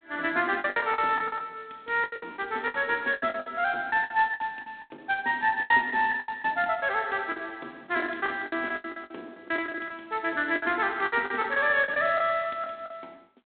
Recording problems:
phone line; 220 Hz to 3.9 kHz, G.726
lost packets; 16% of the sound replaced, filled with the last packet

